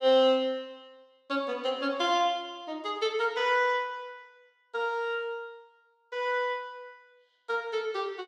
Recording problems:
none

